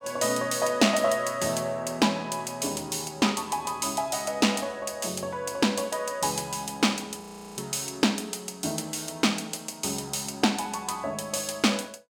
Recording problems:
frozen audio; at 7 s

